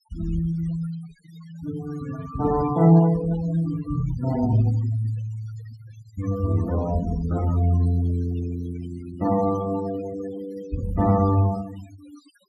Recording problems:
noise reduction artefacts; signal-to-artefact ratio 17 dB

